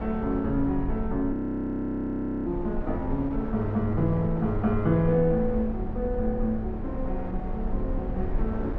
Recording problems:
low-frequency rumble; below 58 Hz, SNR 9 dB
wind noise; below 610 Hz, SNR 11 dB
frozen audio; at 1.5 s for 1 s

